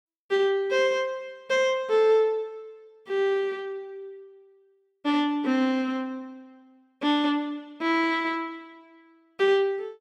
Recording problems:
none

